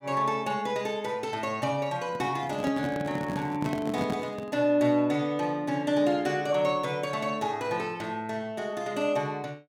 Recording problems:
microphone handling noise; from 2 to 4.5 s; peak -1 dB vs average level

